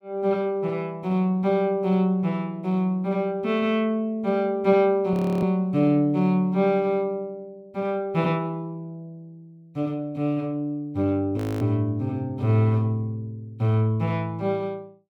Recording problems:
audio freezing; at 5 s and at 11 s

